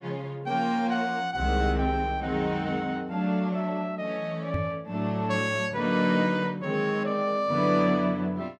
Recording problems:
knock on the microphone; at 4.5 s; peak +1 dB vs average level

